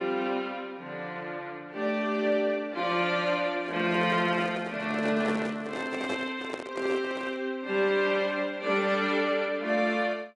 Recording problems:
lossy codec; AAC, log-spectral distance 2 dB, nothing above 10.1 kHz
handling noise; from 3.5 to 7.5 s; peak -2 dB vs average level

